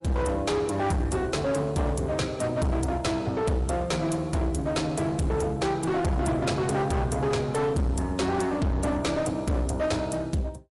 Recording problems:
lossy codec; MP3, log-spectral distance 2 dB, nothing above 11 kHz
distorted audio; hard clipping, uneven, signal-to-distortion ratio 6 dB

